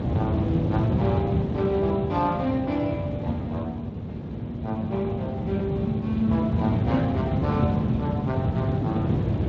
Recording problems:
lossy compression; Speex, log-spectral distance 2 dB
wind noise; below 260 Hz, SNR -1 dB

